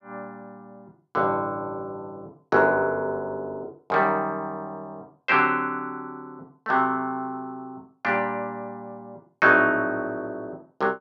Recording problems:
none

